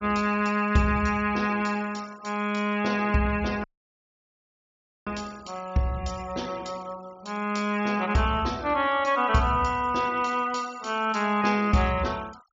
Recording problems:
treble cut off; nothing above 8 kHz
denoising artefacts; signal-to-artefact ratio 23 dB
audio cutting out; at 3.5 s for 1.5 s

